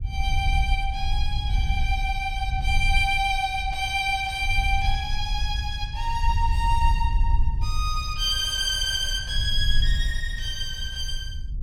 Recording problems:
rumble; below 64 Hz, SNR 3 dB

